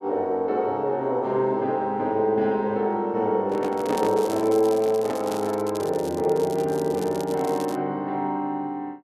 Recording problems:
handling noise; from 3.5 to 5.5 s; peak -2 dB vs average level
crackling; from 4 to 8 s; loose cable, SNR 18 dB

